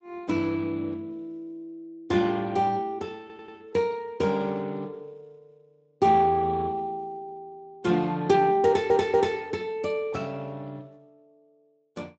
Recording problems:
lossy codec; Speex, log-spectral distance 2 dB, nothing above 7.3 kHz
stutter; at 3 s and at 8.5 s

